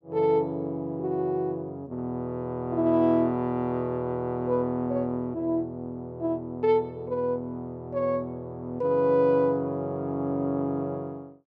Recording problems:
none

